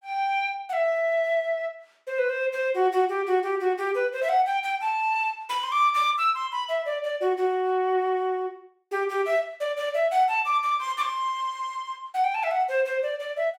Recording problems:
none

